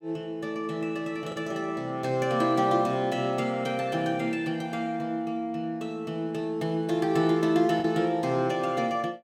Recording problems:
lost packets; 0.9% of the sound replaced, filled with the last packet

